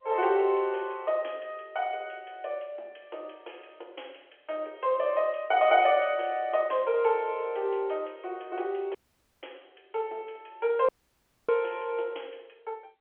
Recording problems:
telephone audio; 320 Hz to 3.3 kHz, G.711
dropout; at 9 s and at 11 s for 0.5 s

